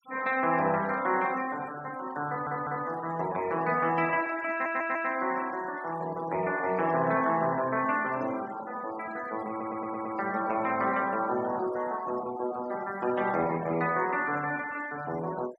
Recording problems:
noise reduction artefacts; signal-to-artefact ratio 17 dB
stutter; at 2.5 s, at 4.5 s and at 9.5 s

